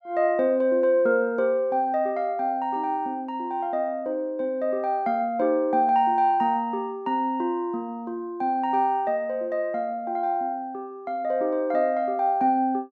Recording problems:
none

